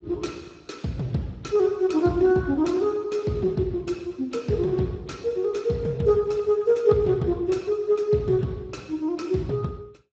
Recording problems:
lossy codec; Speex, log-spectral distance 3 dB, nothing above 7.3 kHz

